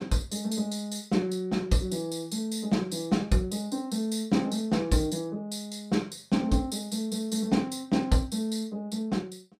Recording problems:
none

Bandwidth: 15 kHz